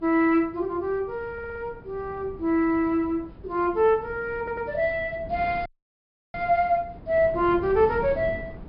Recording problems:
treble missing; nothing above 5.5 kHz
wind on the microphone; below 310 Hz, SNR 17 dB
audio stuttering; at 1.5 s and at 4.5 s
dropout; at 5.5 s for 0.5 s

